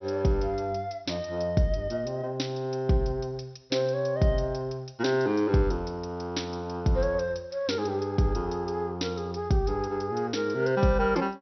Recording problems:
low-pass filter; nothing above 5.7 kHz

